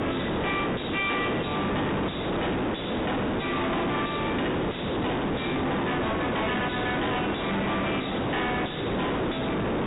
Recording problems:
treble cut off; nothing above 4 kHz
distortion; hard clipping, uneven, signal-to-distortion ratio 5 dB
background hiss; SNR -1 dB

